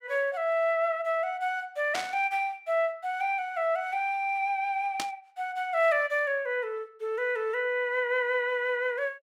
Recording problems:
static burst; at 2 s and at 5 s; peak 0 dB vs average level

